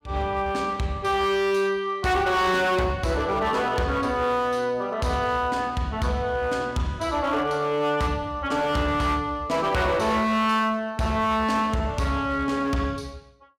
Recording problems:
distorted audio; hard clipping, signal-to-distortion ratio 11 dB

